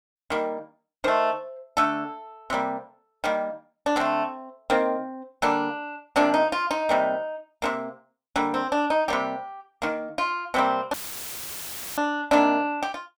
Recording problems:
static burst; at 4 s; peak -8 dB vs average level
dropout; at 11 s for 1 s; filled with static

